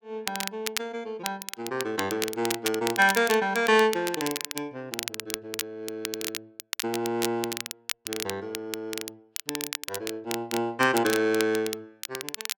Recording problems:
crackle; vinyl, SNR 7 dB

